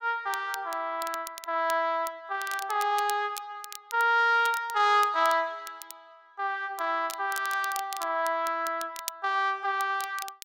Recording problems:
crackling; vinyl, SNR 15 dB

